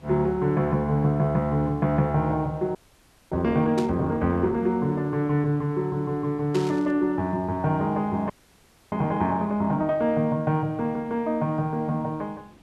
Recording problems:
background hiss; SNR 28 dB
frozen audio; at 3 s for 0.5 s and at 8.5 s for 0.5 s
burst of static; at 4 s and at 6.5 s; peak -8 dB vs average level

